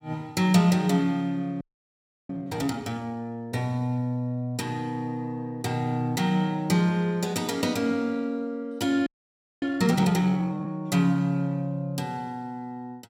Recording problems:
audio freezing; at 1.5 s for 0.5 s and at 9 s for 0.5 s

